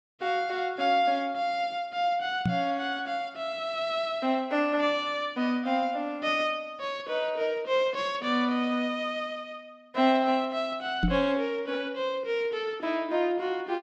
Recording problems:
knock on the microphone; at 2.5 s and at 11 s; peak +6 dB vs average level

